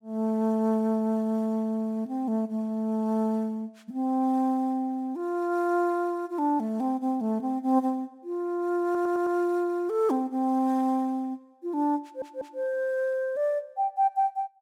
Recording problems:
stutter; at 9 s and at 12 s

